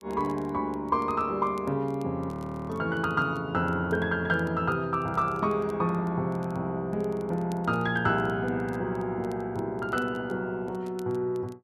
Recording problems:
crackle; vinyl, SNR 30 dB
frozen audio; at 2.5 s

